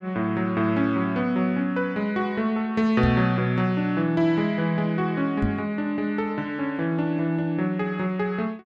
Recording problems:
knock on the microphone; at 3 s and at 5.5 s; peak +1 dB vs average level

